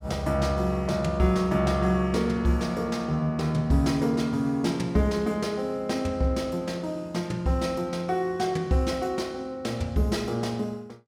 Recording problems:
none

